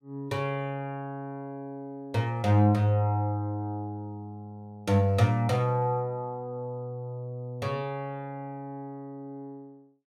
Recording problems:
none

